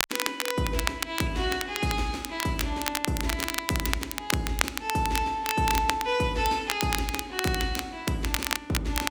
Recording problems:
crackling; vinyl, SNR 3 dB

